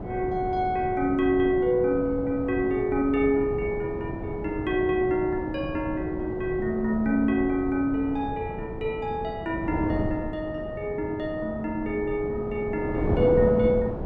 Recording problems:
wind noise; below 450 Hz, SNR 7 dB

